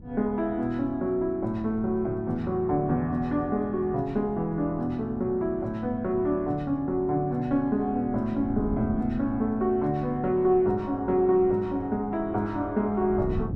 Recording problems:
wind on the microphone; below 190 Hz, SNR 16 dB

